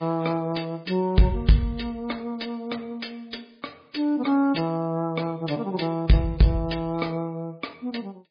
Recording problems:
codec artefacts; MP3, log-spectral distance 4 dB, nothing above 4.6 kHz
distortion; soft clipping, signal-to-distortion ratio 11 dB

